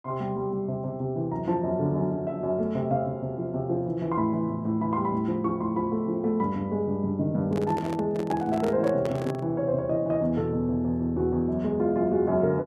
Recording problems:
handling noise; from 7.5 to 9.5 s; peak -2 dB vs average level

